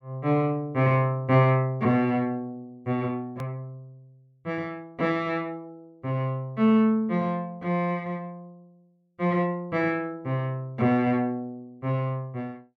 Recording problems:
click at an edit; at 3.5 s

